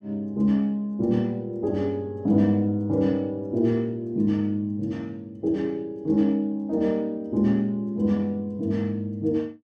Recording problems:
none

